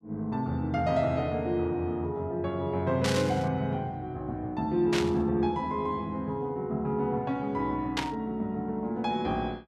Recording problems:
static burst; at 3 s, at 5 s and at 8 s; peak +3 dB vs average level

